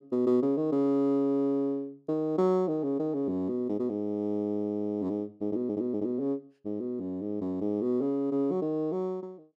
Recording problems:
audio stuttering; at 5.5 s

